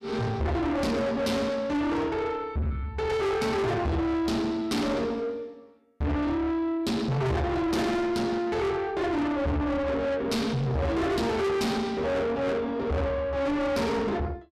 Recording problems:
distorted audio; soft clipping, signal-to-distortion ratio 6 dB

